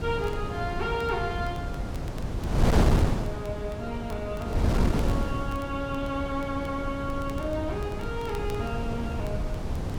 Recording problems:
wind noise; below 290 Hz, SNR -2 dB
crackling; vinyl, SNR 21 dB

